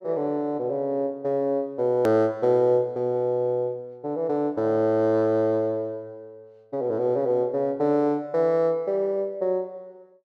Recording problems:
edit click; at 2 s

